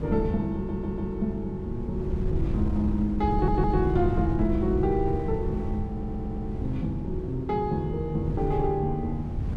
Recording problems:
wind on the microphone; below 130 Hz, SNR 4 dB
audio stuttering; at 0.5 s, at 3.5 s and at 6 s

